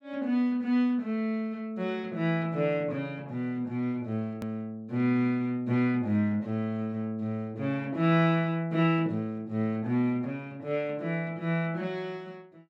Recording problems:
hard cut with a click; at 4.5 s

